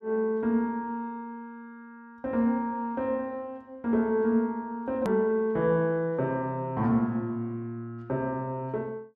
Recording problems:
click at an edit; at 5 s

